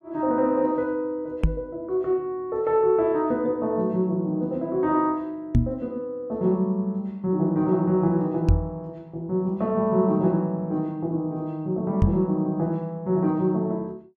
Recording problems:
microphone thump; 4 times, first at 1.5 s; peak +8 dB vs average level

